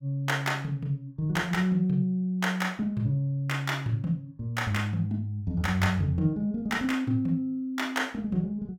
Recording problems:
none

